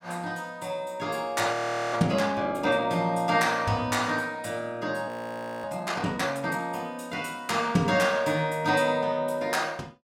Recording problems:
audio freezing; at 1.5 s and at 5 s for 0.5 s

